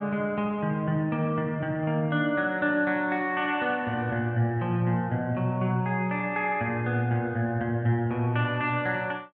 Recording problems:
none

